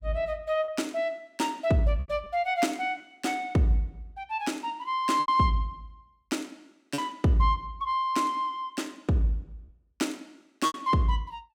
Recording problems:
packet loss; 4% of the sound replaced, filled with repeated pitch periods

